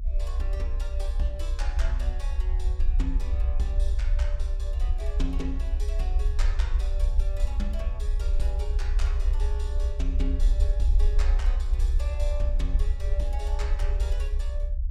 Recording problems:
low-frequency rumble; below 60 Hz, strongest tone 32 Hz, SNR -10 dB

